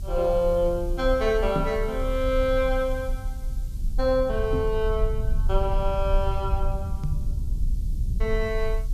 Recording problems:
background hiss; SNR 27 dB
rumble; below 60 Hz, SNR 4 dB
microphone thump; at 1.5 s, at 4.5 s and at 7 s; peak +1 dB vs average level

